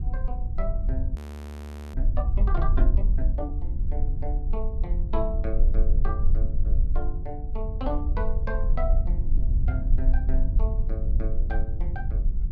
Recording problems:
low-frequency rumble; below 52 Hz, strongest tone 20 Hz, SNR -9 dB
wind on the microphone; below 76 Hz, SNR 5 dB
audio freezing; at 1 s for 1 s

